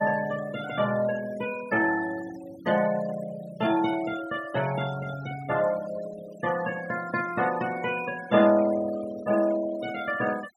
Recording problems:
noise reduction artefacts; signal-to-artefact ratio 15 dB

